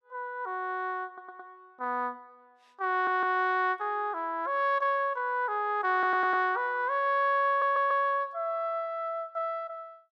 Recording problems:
stutter; 4 times, first at 1 s

